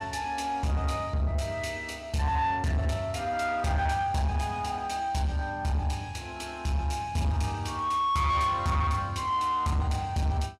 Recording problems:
distorted audio; soft clipping, signal-to-distortion ratio 10 dB

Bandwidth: 15.5 kHz